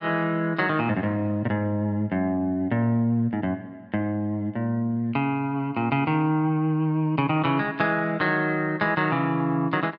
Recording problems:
none

